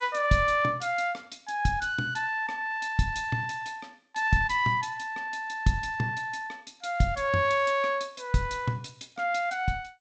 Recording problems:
lossy codec; G.722, log-spectral distance 3 dB

